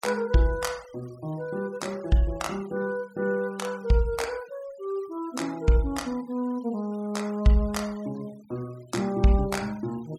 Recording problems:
denoising artefacts; signal-to-artefact ratio 23 dB

